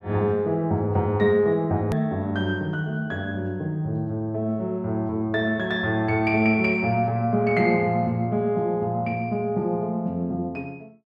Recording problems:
hard cut with a click; at 2 s

